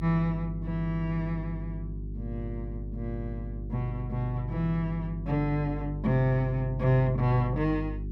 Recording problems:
hum; 50 Hz, harmonics up to 400 Hz, SNR 7 dB

